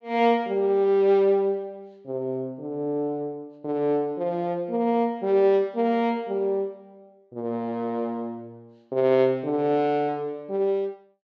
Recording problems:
treble missing; nothing above 8 kHz

